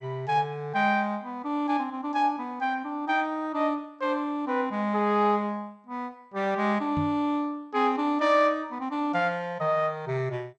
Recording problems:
lossy codec; MP2, log-spectral distance 2 dB
microphone bump; at 7 s; peak -1 dB vs average level

